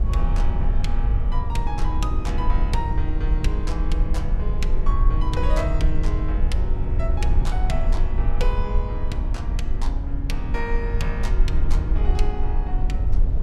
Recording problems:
low-frequency rumble; below 54 Hz, SNR -7 dB

